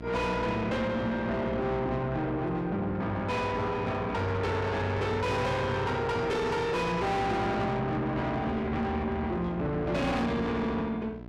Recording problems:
distortion; soft clipping, signal-to-distortion ratio 5 dB
mains hum; 60 Hz, harmonics up to 1.4 kHz, SNR 12 dB

